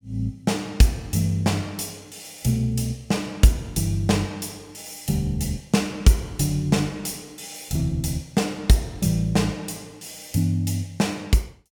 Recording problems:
none

